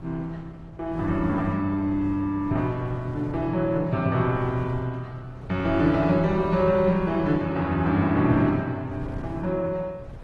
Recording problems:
codec artefacts; Opus, log-spectral distance 2 dB
wind noise; below 240 Hz, SNR 16 dB

